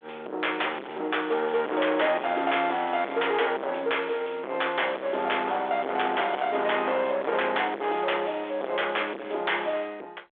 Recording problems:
telephone audio; 300 Hz to 3.5 kHz, G.726
distortion; soft clipping, signal-to-distortion ratio 6 dB

